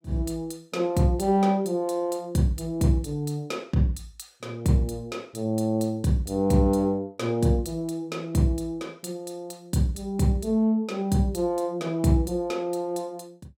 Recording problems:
none

